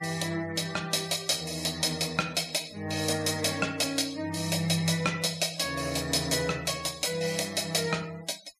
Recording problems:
noise reduction artefacts; signal-to-artefact ratio 20 dB

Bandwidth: 15 kHz